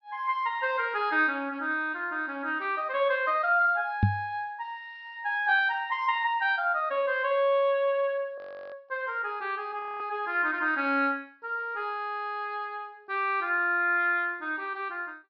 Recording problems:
treble missing; nothing above 5.5 kHz
microphone bump; at 4 s; peak +8 dB vs average level
audio freezing; at 8.5 s and at 10 s

